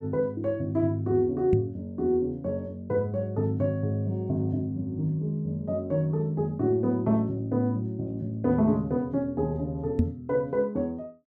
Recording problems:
knock on the microphone; at 1.5 s and at 10 s; peak +7 dB vs average level

